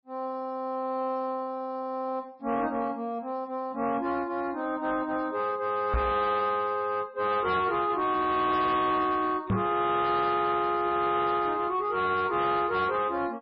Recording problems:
lossy compression; MP3, log-spectral distance 2 dB
distortion; soft clipping, signal-to-distortion ratio 10 dB
knock on the microphone; at 6 s and at 9.5 s; peak +4 dB vs average level

